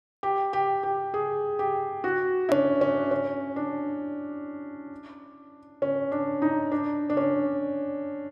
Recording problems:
click at an edit; at 2.5 s

